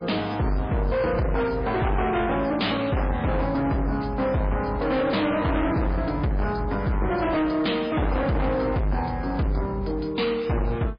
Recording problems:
lossy codec; MP3, log-spectral distance 5 dB, nothing above 5 kHz
distorted audio; soft clipping, signal-to-distortion ratio 6 dB

